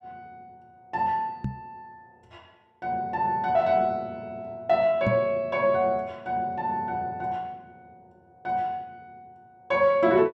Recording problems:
knock on the microphone; at 1.5 s and at 5 s; peak +2 dB vs average level

